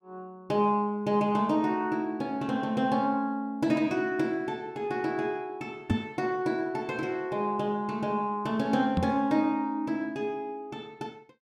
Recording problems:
microphone bump; at 6 s and at 9 s; peak +6 dB vs average level

